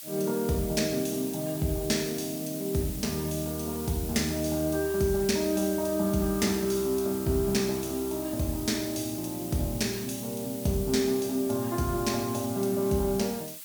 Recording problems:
hiss; slope +4 dB per octave, SNR 10 dB

